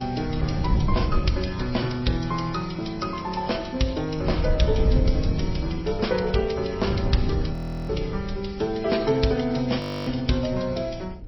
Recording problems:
lossy codec; MP3, then MP3, log-spectral distance 5 dB, nothing above 5.7 kHz
wind on the microphone; below 120 Hz, SNR 3 dB
frozen audio; at 7.5 s and at 10 s

